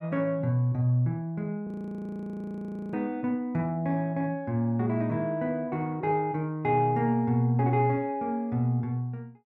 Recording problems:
frozen audio; at 1.5 s for 1.5 s

